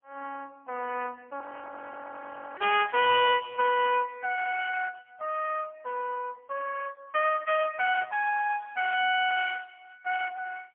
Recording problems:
telephone audio; 300 Hz to 3.3 kHz, AMR-NB, then MP3
audio freezing; at 1.5 s for 1 s

